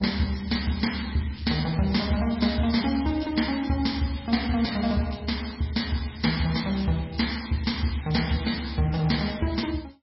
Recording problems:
lossy compression; MP3, log-spectral distance 8 dB, nothing above 5.5 kHz
crackle; from 1 to 3 s and from 6.5 to 9 s; loose cable, SNR 20 dB

